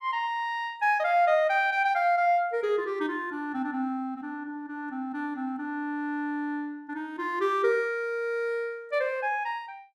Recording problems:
none

